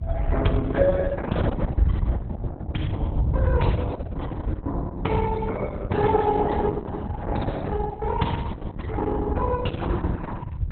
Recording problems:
lossy codec; Opus, then Opus, log-spectral distance 2 dB, nothing above 4 kHz
hum; 50 Hz, harmonics up to 550 Hz, SNR 19 dB
rumble; below 90 Hz, SNR -2 dB

